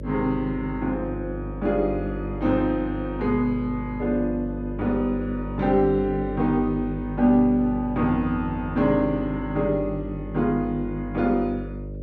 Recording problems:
electrical hum; 50 Hz, harmonics up to 600 Hz, SNR 10 dB

